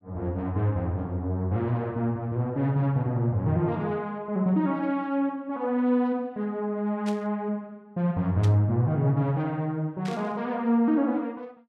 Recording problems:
burst of static; at 7 s, at 8.5 s and at 10 s; peak -10 dB vs average level

